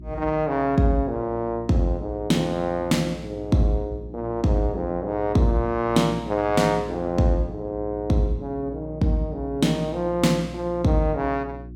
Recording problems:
hum; 60 Hz, harmonics up to 360 Hz, SNR 16 dB

